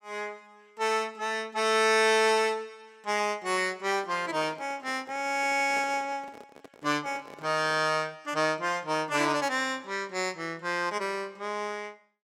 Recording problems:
handling noise; from 4 to 8 s; peak -11 dB vs average level

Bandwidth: 16 kHz